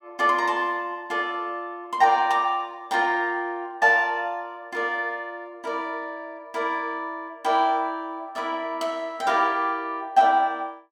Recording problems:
none

